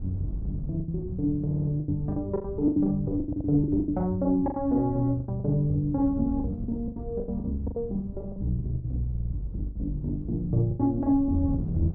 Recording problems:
wind noise; below 140 Hz, SNR 10 dB
packet loss; 13% of the sound replaced, filled with the last packet
audio stuttering; at 1.5 s, at 3.5 s and at 9 s

